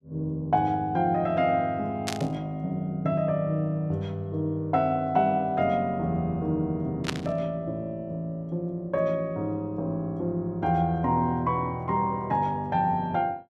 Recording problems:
static burst; at 2 s and at 7 s; peak +2 dB vs average level

